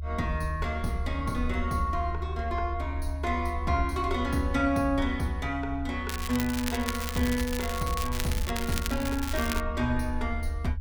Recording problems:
low-frequency rumble; below 76 Hz, strongest tone 74 Hz, SNR 5 dB
crackling; from 6 to 9.5 s; loose cable, SNR 6 dB

